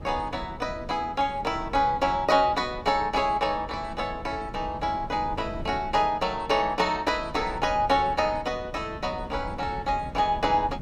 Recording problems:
wind on the microphone; below 240 Hz, SNR 14 dB

